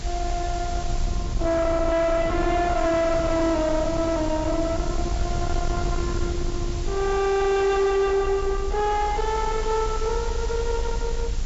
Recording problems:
treble cut off; nothing above 8 kHz
distorted audio; soft clipping, signal-to-distortion ratio 7 dB
hiss; slope 0 dB per octave, SNR 16 dB
low-frequency rumble; below 110 Hz, strongest tone 26 Hz, SNR 6 dB

